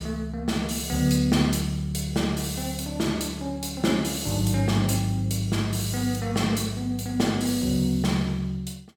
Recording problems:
none

